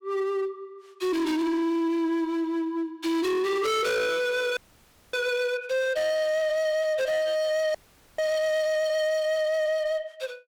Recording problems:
distorted audio; hard clipping, uneven, signal-to-distortion ratio 6 dB
frozen audio; at 4.5 s for 0.5 s and at 8 s

